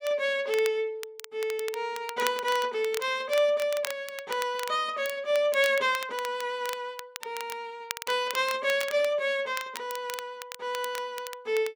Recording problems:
crackle; vinyl, SNR 12 dB

